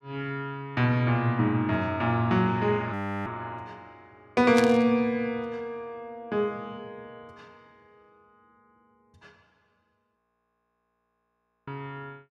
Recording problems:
audio freezing; at 3 s and at 10 s for 1.5 s
static burst; at 4.5 s; peak 0 dB vs average level

